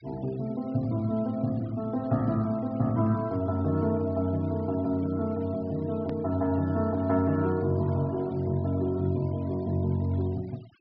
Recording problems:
treble cut off; nothing above 5.5 kHz
denoising artefacts; signal-to-artefact ratio 26 dB
click at an edit; at 6 s

